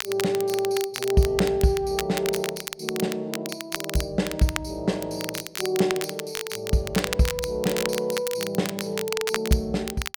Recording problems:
crackle; vinyl, SNR 6 dB

